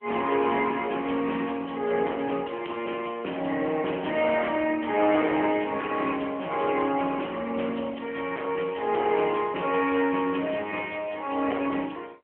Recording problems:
telephone audio; 280 Hz to 3.2 kHz, AMR-NB
distorted audio; hard clipping, signal-to-distortion ratio 13 dB

